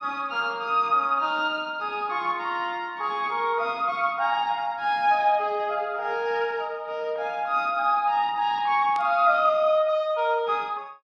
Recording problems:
burst of static; at 9 s; peak -13 dB vs average level

